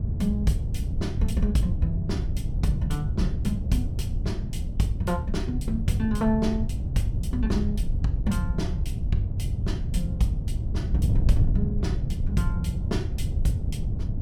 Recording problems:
wind on the microphone; below 110 Hz, SNR 0 dB

